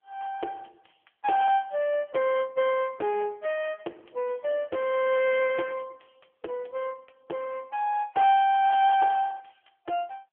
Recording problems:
phone line; 300 Hz to 3.1 kHz, AMR-NB

